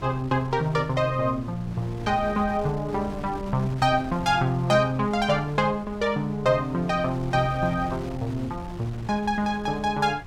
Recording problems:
wind on the microphone; below 300 Hz, SNR 15 dB

